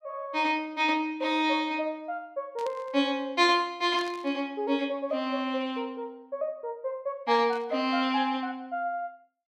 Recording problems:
static burst; at 2.5 s, at 4 s and at 7.5 s; peak -12 dB vs average level

